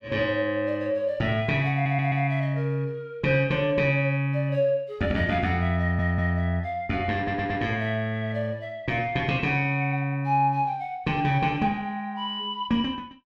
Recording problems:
audio stuttering; at 1.5 s, at 6 s and at 7 s

